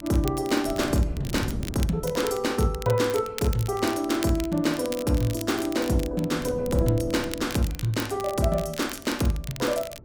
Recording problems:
wind noise; below 250 Hz, SNR 12 dB
crackle; vinyl, SNR 14 dB

